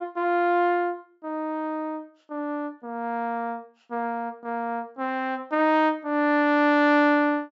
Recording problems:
treble missing; nothing above 8 kHz

